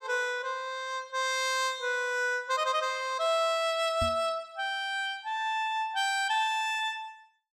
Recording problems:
microphone thump; at 4 s; peak -2 dB vs average level

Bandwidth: 15 kHz